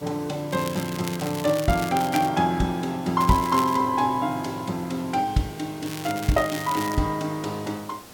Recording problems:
background hiss; slope -4 dB per octave, SNR 20 dB
crackle; until 2.5 s, at 3 s and from 6 to 7 s; loose cable, SNR 12 dB

